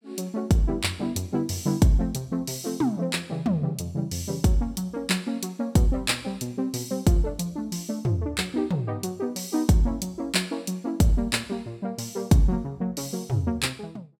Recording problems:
none

